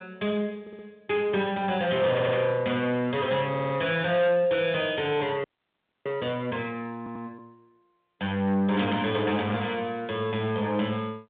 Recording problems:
phone line; 130 Hz to 3.7 kHz, G.726
distorted audio; soft clipping, signal-to-distortion ratio 12 dB
stutter; 4 times, first at 0.5 s
static burst; at 2 s and at 9 s; peak -6 dB vs average level
audio freezing; at 5.5 s for 0.5 s

